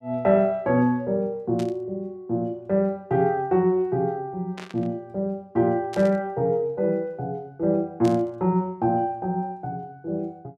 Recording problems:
burst of static; 4 times, first at 1.5 s; peak -10 dB vs average level

